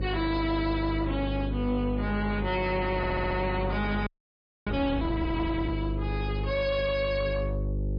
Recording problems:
lossy codec; MP3, log-spectral distance 2 dB, nothing above 5 kHz
distorted audio; soft clipping, signal-to-distortion ratio 11 dB
hum; 50 Hz, harmonics up to 550 Hz, SNR 3 dB
handling noise; from 2.5 to 5.5 s; peak -10 dB vs average level
audio stuttering; at 3 s
audio freezing; at 4 s for 0.5 s

